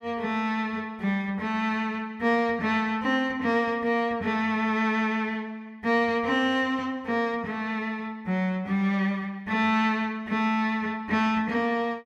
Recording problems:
none

